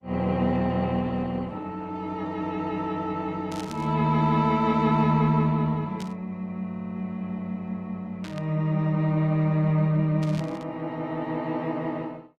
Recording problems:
lossy codec; Opus, log-spectral distance 2 dB
static burst; 4 times, first at 3.5 s; peak -11 dB vs average level
audio stuttering; at 6.5 s

